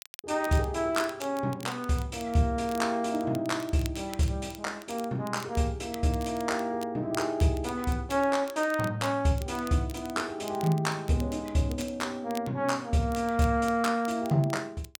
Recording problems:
crackle; vinyl, SNR 19 dB

